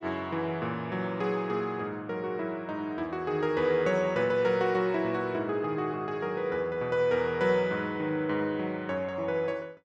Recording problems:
none

